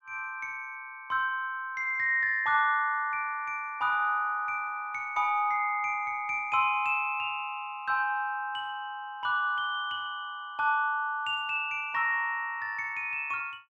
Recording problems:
none

